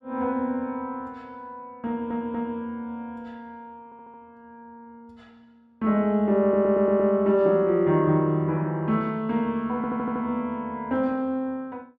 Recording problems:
stutter; 4 times, first at 2 s

